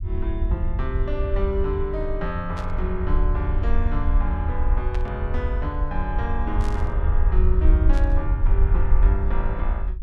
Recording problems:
low-frequency rumble; below 64 Hz, SNR -6 dB
static burst; 4 times, first at 2.5 s; peak -5 dB vs average level

